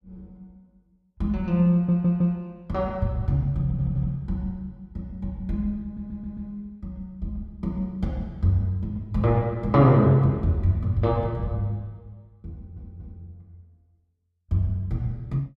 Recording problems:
stutter; 4 times, first at 1.5 s

